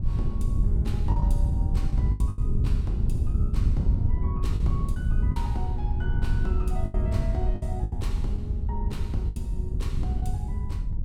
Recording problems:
wind noise; below 92 Hz, SNR -10 dB
lost packets; 6% of the sound replaced, filled with the last packet

